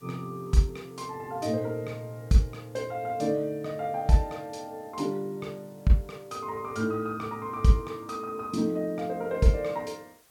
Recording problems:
background hiss; slope -1 dB per octave, SNR 30 dB

